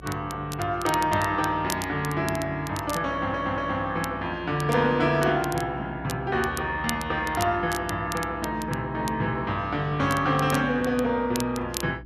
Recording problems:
hum; 60 Hz, harmonics up to 360 Hz, SNR 19 dB
crackling; vinyl, SNR 14 dB
stutter; at 3 s

